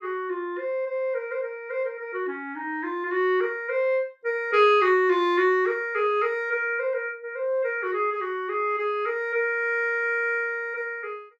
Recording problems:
none

